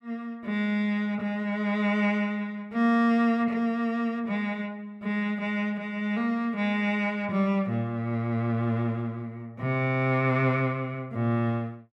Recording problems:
none

